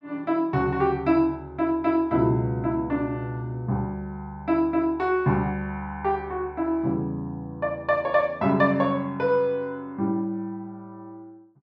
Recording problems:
none

